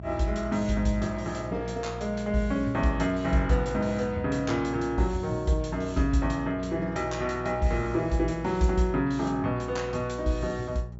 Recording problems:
treble cut off; nothing above 8 kHz
hum; 60 Hz, harmonics up to 600 Hz, SNR 13 dB

